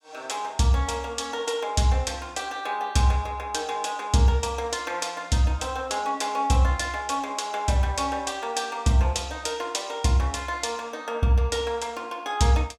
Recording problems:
none

